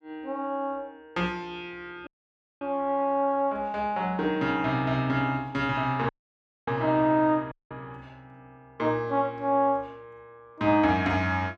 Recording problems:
audio cutting out; at 2 s for 0.5 s, at 6 s for 0.5 s and at 7.5 s

